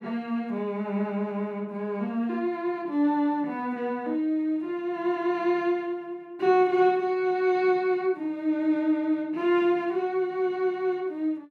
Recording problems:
none

